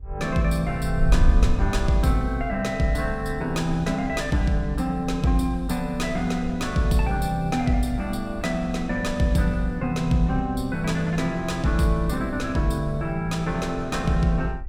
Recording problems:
wind noise; below 62 Hz, SNR 9 dB

